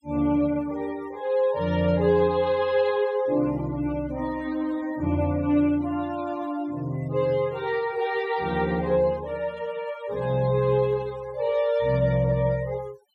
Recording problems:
denoising artefacts; signal-to-artefact ratio 22 dB

